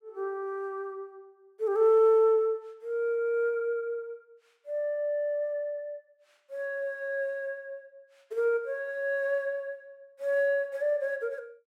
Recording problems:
none

